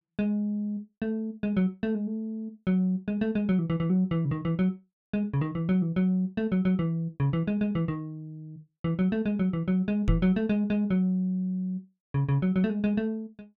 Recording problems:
microphone thump; at 10 s; peak +5 dB vs average level

